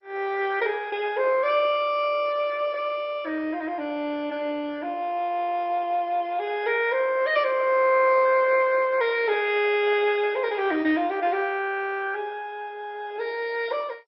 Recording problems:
lossy codec; MP2, log-spectral distance 3 dB, nothing above 5.3 kHz

